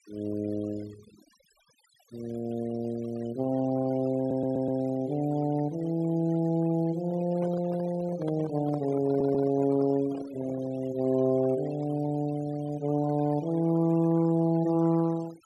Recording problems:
noise reduction artefacts; signal-to-artefact ratio 22 dB
stutter; at 4 s and at 9 s
handling noise; from 7 to 11 s; peak -8 dB vs average level

